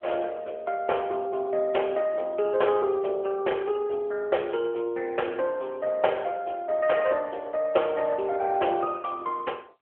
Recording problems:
phone line; 300 Hz to 3.3 kHz, AMR-NB

